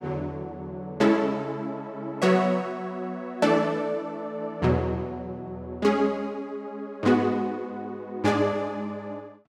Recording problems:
none

